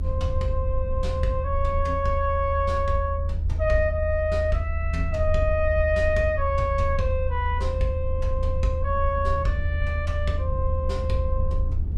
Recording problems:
low-frequency rumble; below 80 Hz, SNR 1 dB

